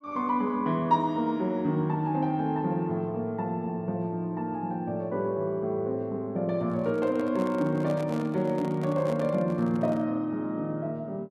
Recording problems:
microphone handling noise; from 6.5 to 10 s; peak -6 dB vs average level

